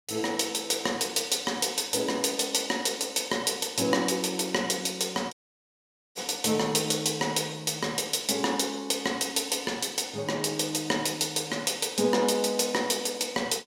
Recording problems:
dropout; at 5.5 s for 1 s

